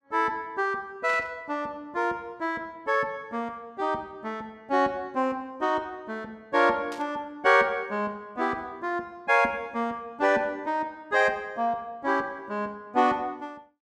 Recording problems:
static burst; at 1 s and at 7 s; peak -9 dB vs average level

